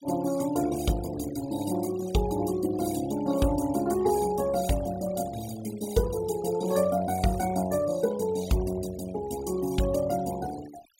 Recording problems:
noise reduction artefacts; signal-to-artefact ratio 14 dB

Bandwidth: 16 kHz